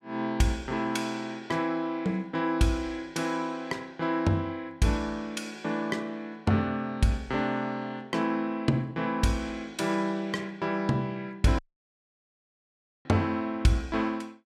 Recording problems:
dropout; at 12 s for 1.5 s

